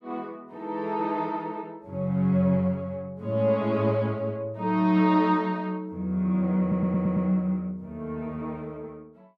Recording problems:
audio stuttering; at 6.5 s

